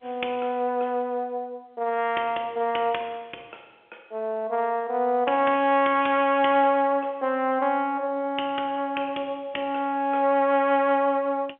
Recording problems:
phone line; 320 Hz to 3.4 kHz, G.711

